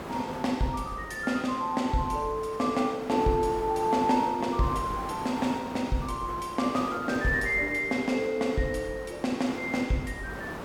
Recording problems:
hiss; SNR 12 dB

